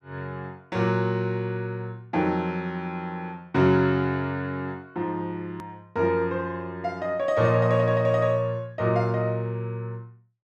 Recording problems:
edit click; at 5.5 s

